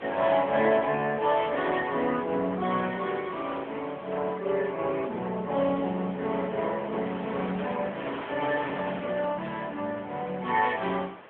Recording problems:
phone line; 260 Hz to 3.3 kHz, AMR-NB
wind on the microphone; below 2.1 kHz, SNR 13 dB

